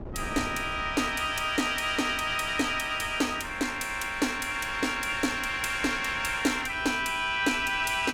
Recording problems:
wind on the microphone; below 380 Hz, SNR 18 dB

